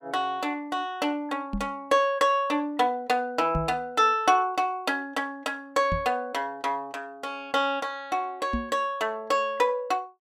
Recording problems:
knock on the microphone; 4 times, first at 1.5 s; peak +1 dB vs average level

